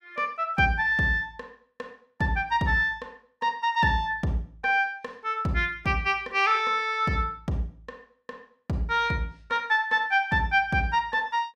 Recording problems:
none

